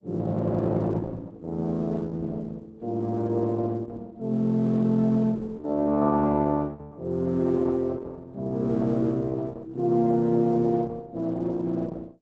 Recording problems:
codec artefacts; Opus, log-spectral distance 2 dB, nothing above 7.6 kHz

